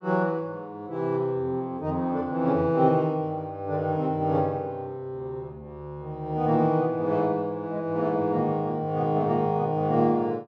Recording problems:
none

